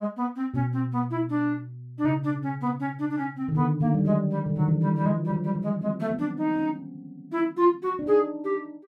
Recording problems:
none

